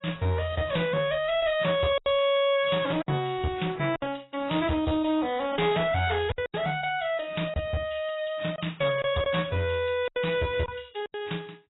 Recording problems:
lossy compression; AAC, log-spectral distance 5 dB, nothing above 3.5 kHz
distorted audio; hard clipping, uneven, signal-to-distortion ratio 10 dB
packet loss; 5% of the sound replaced, filled with silence

